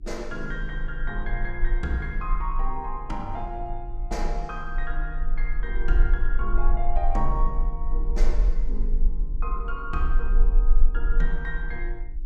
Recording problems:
hum; 60 Hz, harmonics up to 360 Hz, SNR 20 dB
low-frequency rumble; below 34 Hz, strongest tone 16 Hz, SNR -4 dB

